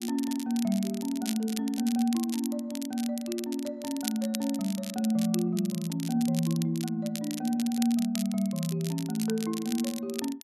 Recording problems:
crackling; vinyl, SNR 11 dB

